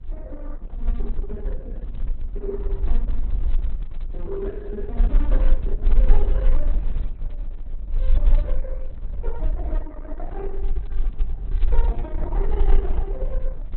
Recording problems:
lossy compression; Opus, then Opus, log-spectral distance 2 dB, nothing above 3.9 kHz
low-frequency rumble; below 38 Hz, strongest tone 20 Hz, SNR -10 dB

